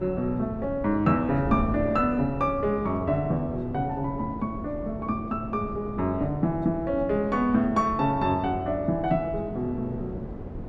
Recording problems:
wind noise; below 340 Hz, SNR 10 dB

